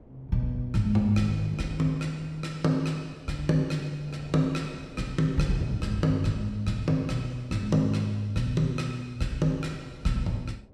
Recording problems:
wind on the microphone; below 400 Hz, SNR 20 dB

